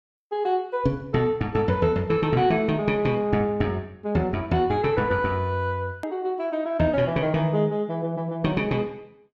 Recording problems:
edit click; at 6 s

